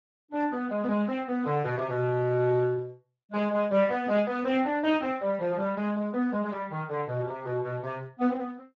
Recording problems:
codec artefacts; Speex, log-spectral distance 2 dB

